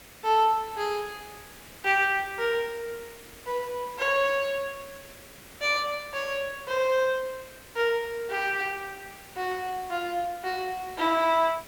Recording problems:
background hiss; SNR 19 dB

